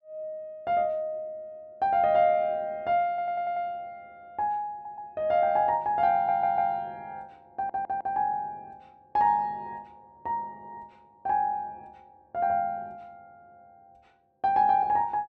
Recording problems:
stutter; 4 times, first at 3 s

